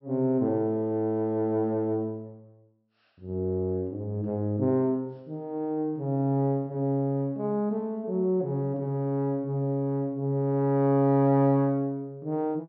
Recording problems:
treble cut off; nothing above 5.6 kHz

